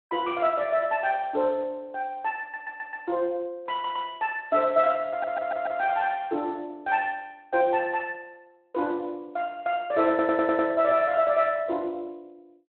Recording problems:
phone line; 220 Hz to 3.3 kHz, Speex
stutter; 4 times, first at 2.5 s

